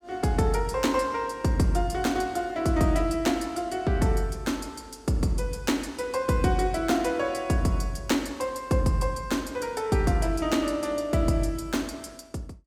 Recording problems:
none

